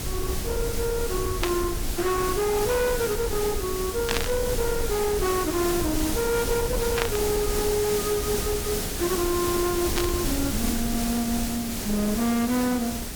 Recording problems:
distorted audio; hard clipping, uneven, signal-to-distortion ratio 10 dB
hiss; SNR 4 dB
rumble; below 94 Hz, SNR 9 dB
burst of static; 4 times, first at 1.5 s; peak +4 dB vs average level

